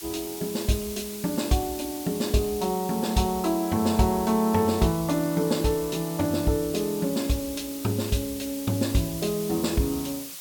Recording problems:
background hiss; slope +2 dB per octave, SNR 11 dB

